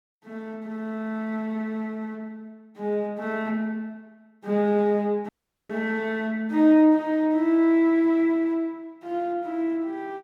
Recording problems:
dropout; at 5.5 s

